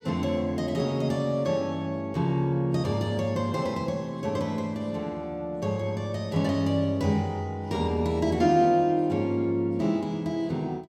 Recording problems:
none

